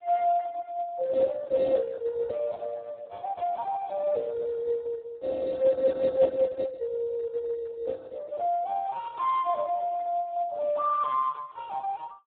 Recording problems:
telephone audio; 970 Hz to 2.8 kHz, Speex

